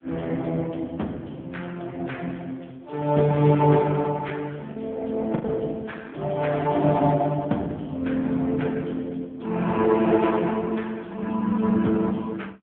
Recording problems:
phone line; 110 Hz to 3.5 kHz, AMR-NB
lost packets; 1% of the sound replaced, filled with the last packet

